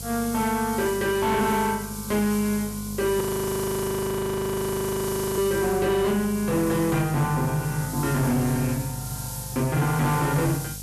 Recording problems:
distorted audio; soft clipping, signal-to-distortion ratio 11 dB
hum; 50 Hz, harmonics up to 800 Hz, SNR 14 dB
background hiss; SNR 11 dB
frozen audio; at 3 s for 2 s

